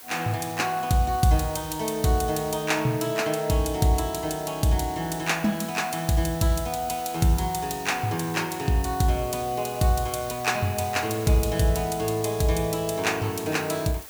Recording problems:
hiss; slope -1 dB per octave, SNR 16 dB

